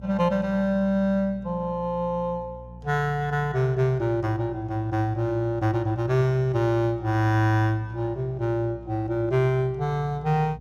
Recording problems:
hum; 60 Hz, harmonics up to 480 Hz, SNR 18 dB

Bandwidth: 15 kHz